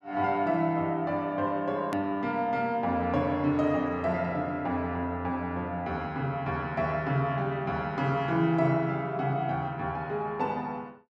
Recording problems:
edit click; at 2 s

